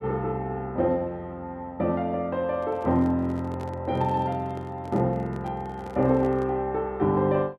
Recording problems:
handling noise; from 2.5 to 6.5 s; peak -11 dB vs average level

